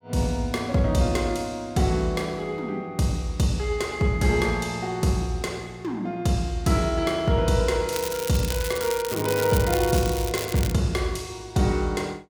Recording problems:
crackling; from 8 to 11 s; loose cable, SNR 8 dB

